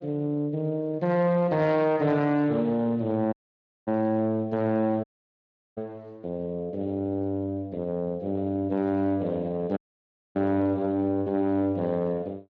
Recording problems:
codec artefacts; Speex, log-spectral distance 2 dB
distorted audio; soft clipping, signal-to-distortion ratio 11 dB
dropout; at 3.5 s for 0.5 s, at 5 s for 0.5 s and at 10 s for 0.5 s

